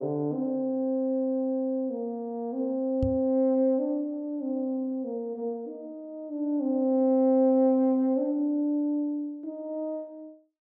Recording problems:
knock on the microphone; at 3 s; peak +1 dB vs average level

